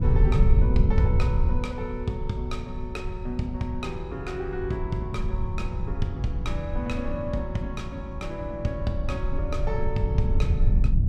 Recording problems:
rumble; below 88 Hz, SNR -3 dB

